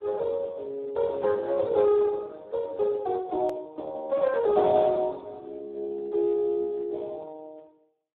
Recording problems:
telephone audio; 320 Hz to 2.1 kHz, Speex
edit click; at 3.5 s

